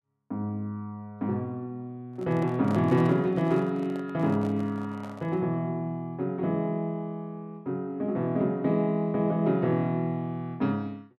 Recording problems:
microphone handling noise; from 2 to 5.5 s; peak -7 dB vs average level

